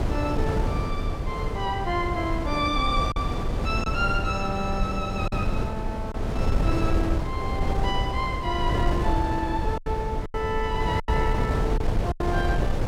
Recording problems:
wind on the microphone; below 230 Hz, SNR -1 dB
lost packets; 4% of the sound replaced, filled with silence

